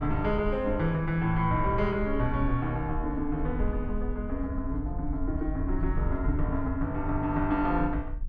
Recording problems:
wind noise; below 64 Hz, SNR 6 dB

